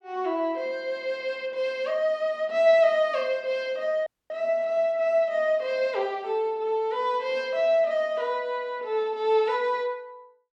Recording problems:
dropout; at 4 s

